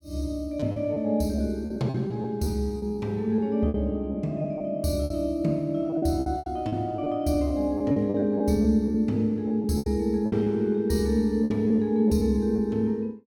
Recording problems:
lost packets; 11% of the sound replaced, filled with repeated pitch periods

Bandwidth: 17.5 kHz